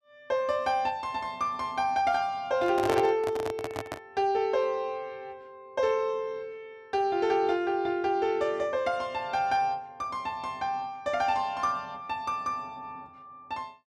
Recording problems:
handling noise; from 2.5 to 4 s; peak +2 dB vs average level

